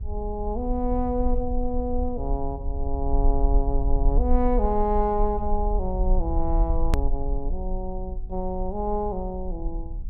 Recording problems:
hum; 60 Hz, harmonics up to 480 Hz, SNR 19 dB
low-frequency rumble; below 48 Hz, SNR 1 dB
hard cut with a click; at 7 s

